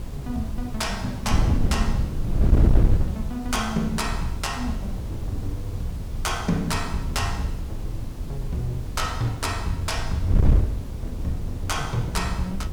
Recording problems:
background hiss; slope -4 dB per octave, SNR 18 dB
wind on the microphone; below 110 Hz, SNR -1 dB

